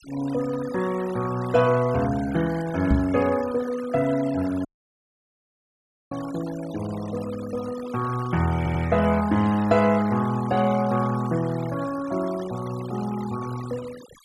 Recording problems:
denoising artefacts; signal-to-artefact ratio 17 dB
microphone bump; at 3 s; peak +6 dB vs average level
audio cutting out; at 4.5 s for 1.5 s
stutter; at 8.5 s

